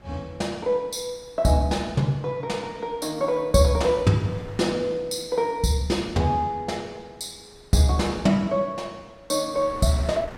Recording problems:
wind noise; below 1.1 kHz, SNR 24 dB

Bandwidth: 16.5 kHz